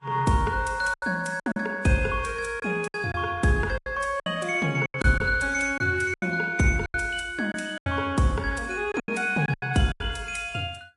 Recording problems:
lossy compression; Vorbis, then MP3, log-spectral distance 3 dB
lost packets; 10% of the sound replaced, filled with silence

